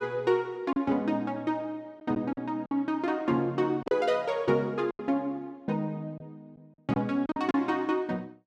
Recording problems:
lost packets; 5% of the sound replaced, filled with silence

